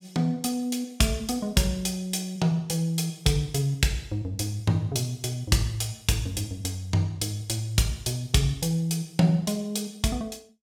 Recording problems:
none

